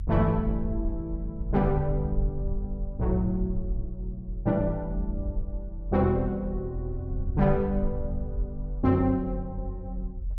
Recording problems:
rumble; below 60 Hz, strongest tone 42 Hz, SNR 6 dB

